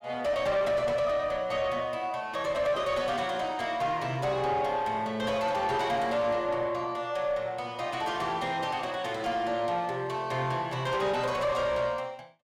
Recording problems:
distorted audio; soft clipping, signal-to-distortion ratio 10 dB

